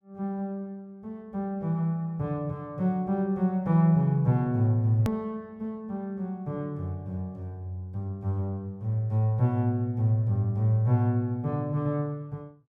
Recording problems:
edit click; at 5 s

